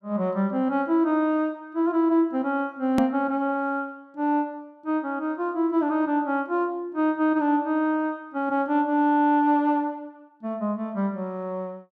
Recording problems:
edit click; at 3 s

